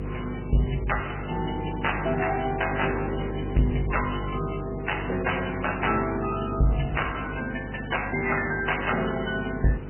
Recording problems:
lossy codec; MP3, log-spectral distance 11 dB, nothing above 3 kHz
distortion; soft clipping, signal-to-distortion ratio 11 dB
electrical hum; 50 Hz, harmonics up to 500 Hz, SNR 8 dB
background hiss; SNR 19 dB

